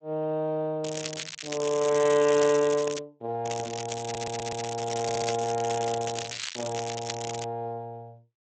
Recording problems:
lossy compression; Speex, log-spectral distance 12 dB
crackling; from 1 to 3 s and from 3.5 to 7.5 s; loose cable, SNR 7 dB
audio stuttering; at 4 s and at 5 s

